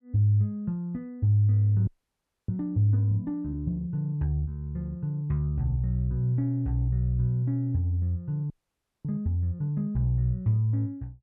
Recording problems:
audio freezing; at 2 s for 0.5 s and at 8.5 s for 0.5 s

